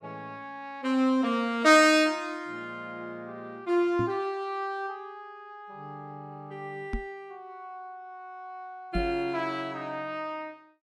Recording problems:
knock on the microphone; at 4 s, at 7 s and at 9 s; peak -1 dB vs average level

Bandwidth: 15.5 kHz